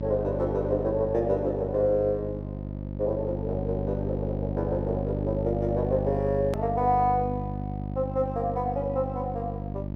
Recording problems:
electrical hum; 50 Hz, harmonics up to 650 Hz, SNR 4 dB
edit click; at 6.5 s

